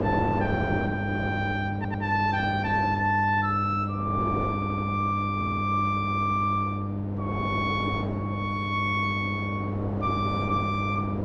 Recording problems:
hum; 50 Hz, harmonics up to 900 Hz, SNR 3 dB
wind noise; below 610 Hz, SNR 7 dB
stutter; at 2 s, at 4.5 s and at 5.5 s

